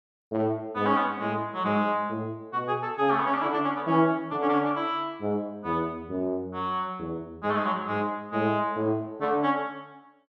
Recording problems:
none

